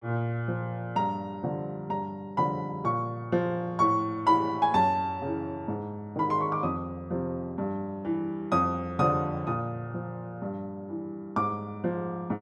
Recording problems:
none

